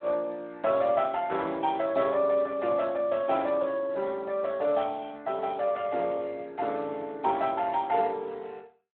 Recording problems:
telephone audio; 300 Hz to 3.3 kHz, Speex

